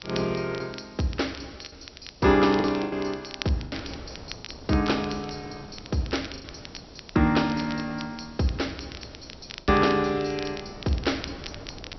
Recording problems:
treble missing; nothing above 5.8 kHz
hiss; slope +5 dB per octave, SNR 27 dB
wind noise; below 610 Hz, SNR 21 dB
crackling; vinyl, SNR 16 dB
lost packets; 4% of the sound replaced, filled with the last packet

